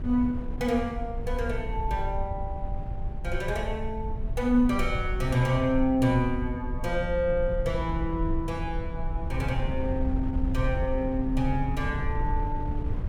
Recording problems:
rumble; below 64 Hz, SNR 9 dB
wind on the microphone; below 90 Hz, SNR 7 dB

